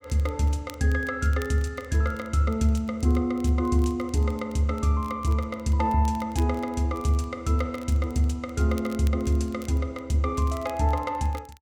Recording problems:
crackle; vinyl, SNR 25 dB

